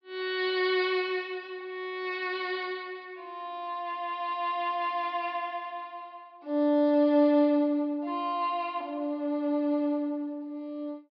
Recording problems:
low-pass filter; nothing above 5.5 kHz

